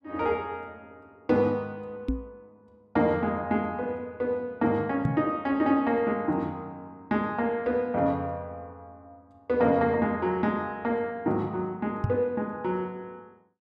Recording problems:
microphone bump; at 2 s, at 5 s and at 12 s; peak +4 dB vs average level

